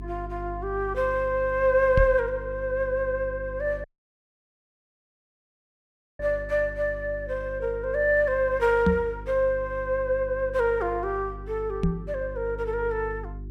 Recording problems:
electrical hum; 50 Hz, harmonics up to 400 Hz, SNR 14 dB
microphone thump; at 2 s, at 9 s and at 12 s; peak +6 dB vs average level
audio cutting out; at 4 s for 2.5 s

